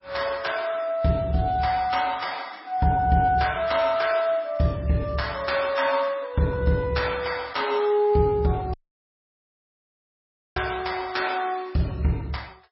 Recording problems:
codec artefacts; MP3, log-spectral distance 4 dB, nothing above 5.5 kHz
audio cutting out; at 8.5 s for 2 s

